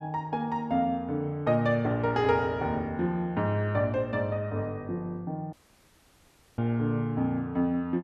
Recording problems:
dropout; at 5.5 s for 1 s

